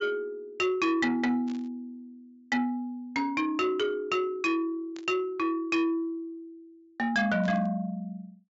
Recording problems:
low-pass filter; nothing above 8 kHz
distorted audio; soft clipping, signal-to-distortion ratio 12 dB
static burst; at 1.5 s, at 5 s and at 7.5 s; peak -13 dB vs average level

